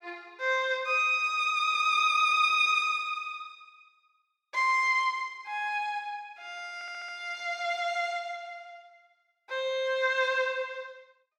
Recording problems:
audio stuttering; at 6.5 s

